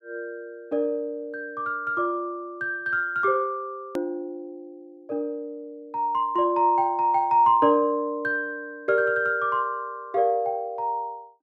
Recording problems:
edit click; at 4 s

